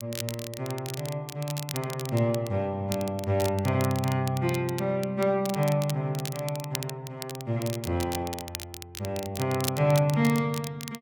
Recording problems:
crackle; vinyl, SNR 11 dB

